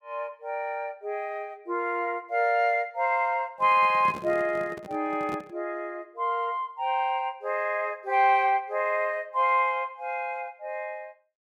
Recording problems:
handling noise; from 3.5 to 5.5 s; peak -8 dB vs average level

